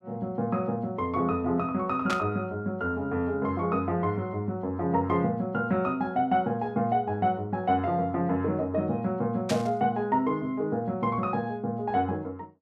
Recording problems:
burst of static; at 2 s and at 9.5 s; peak -1 dB vs average level

